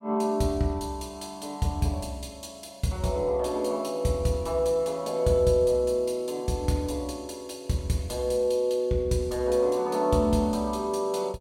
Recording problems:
none

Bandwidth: 16.5 kHz